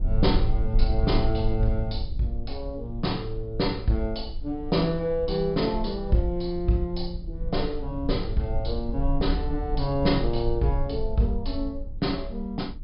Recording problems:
treble cut off; nothing above 5.5 kHz
rumble; below 54 Hz, strongest tone 20 Hz, SNR 5 dB

